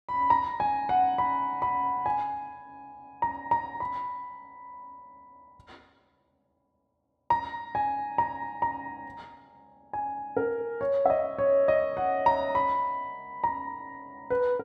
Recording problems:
none

